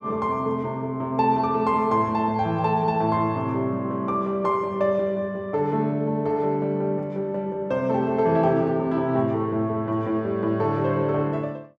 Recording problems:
none

